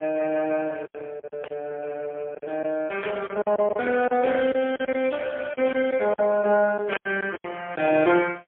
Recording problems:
phone line; 220 Hz to 3.1 kHz, AMR-NB, then MP3
packet loss; 9% of the sound replaced, filled with silence
static burst; at 1.5 s, at 3 s and at 7 s; peak -6 dB vs average level

